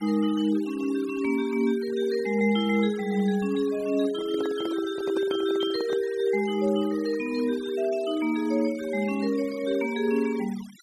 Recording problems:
noise reduction artefacts; signal-to-artefact ratio 19 dB
handling noise; from 4 to 6 s; peak -3 dB vs average level

